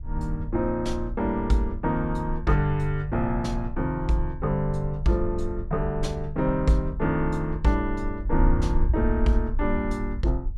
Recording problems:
wind on the microphone; below 58 Hz, SNR 6 dB

